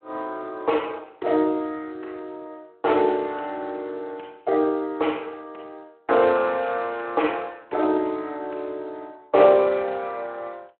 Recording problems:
telephone audio; 320 Hz to 3.8 kHz, Speex

